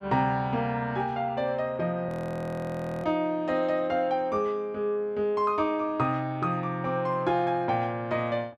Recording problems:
audio freezing; at 2 s for 1 s

